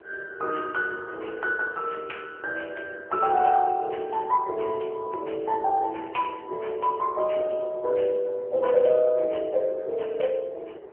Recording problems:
telephone audio; 340 Hz to 3 kHz, AMR-NB
wind on the microphone; below 560 Hz, SNR 20 dB

